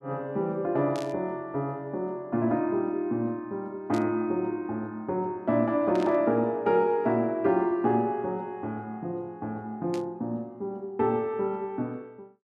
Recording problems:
burst of static; 4 times, first at 1 s; peak -10 dB vs average level

